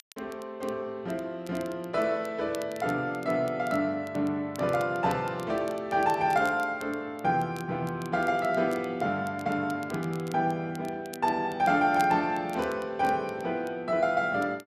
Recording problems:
crackling; vinyl, SNR 23 dB

